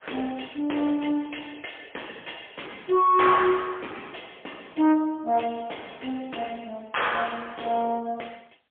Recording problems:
telephone audio; 300 Hz to 3.4 kHz, AMR-NB, then MP3
distortion; soft clipping, signal-to-distortion ratio 11 dB

